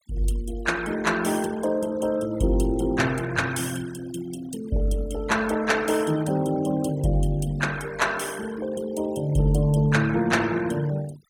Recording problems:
noise reduction artefacts; signal-to-artefact ratio 19 dB

